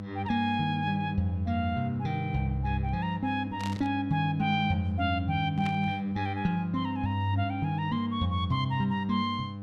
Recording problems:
electrical hum; 50 Hz, harmonics up to 1 kHz, SNR 8 dB
burst of static; at 3.5 s and at 5.5 s; peak -7 dB vs average level

